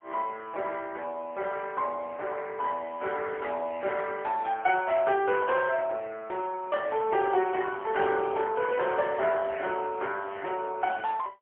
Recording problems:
phone line; 340 Hz to 3.5 kHz, AMR-NB, then MP3

